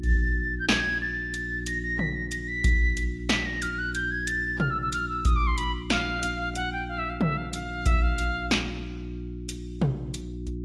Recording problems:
lossy codec; AAC, log-spectral distance 2 dB, nothing above 11 kHz
mains hum; 60 Hz, harmonics up to 360 Hz, SNR 9 dB

